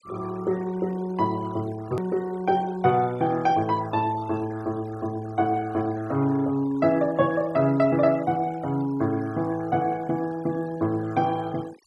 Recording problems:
noise reduction artefacts; signal-to-artefact ratio 22 dB
edit click; at 2 s

